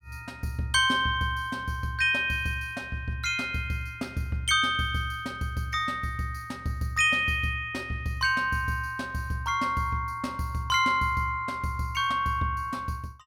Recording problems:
none

